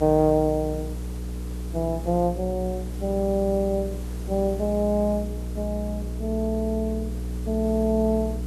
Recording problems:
hum; 60 Hz, harmonics up to 480 Hz, SNR 7 dB
background hiss; slope -5 dB per octave, SNR 19 dB

